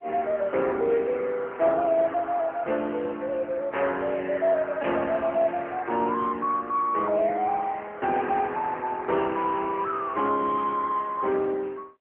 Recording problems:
telephone audio; 280 Hz to 3.1 kHz, AMR-NB

